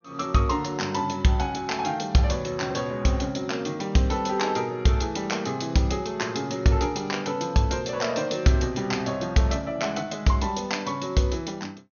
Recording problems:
low-pass filter; nothing above 6.6 kHz

